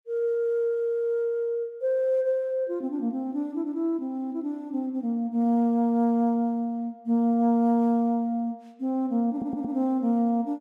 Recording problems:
stutter; at 9.5 s

